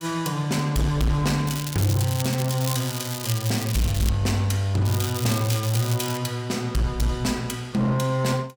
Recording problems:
distorted audio; hard clipping, signal-to-distortion ratio 11 dB
crackle; from 1.5 to 4 s and from 5 to 6 s; loose cable, SNR 8 dB

